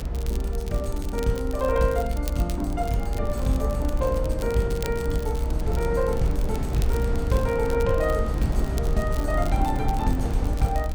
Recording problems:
rumble; below 78 Hz, SNR 2 dB
wind on the microphone; below 140 Hz, SNR 11 dB
crackle; vinyl, SNR 17 dB

